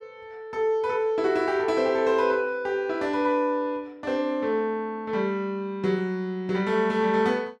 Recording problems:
none

